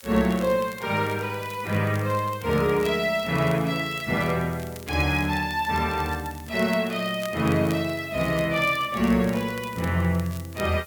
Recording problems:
background hiss; slope +1 dB per octave, SNR 23 dB
crackle; vinyl, SNR 21 dB

